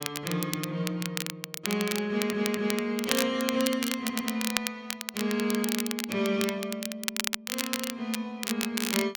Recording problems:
crackle; vinyl, SNR 3 dB
audio stuttering; at 2 s and at 4 s

